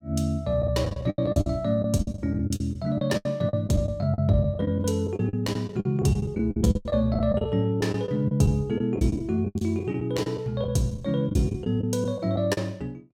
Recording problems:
lost packets; 16% of the sound replaced, filled with the last packet

